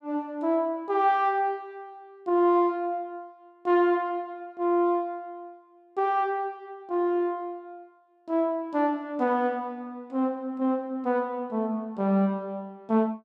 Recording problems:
none

